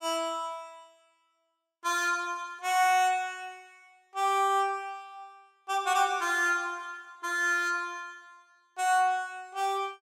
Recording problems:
none

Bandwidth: 16.5 kHz